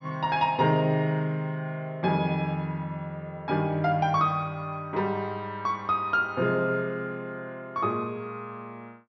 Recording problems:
treble missing; nothing above 5.8 kHz

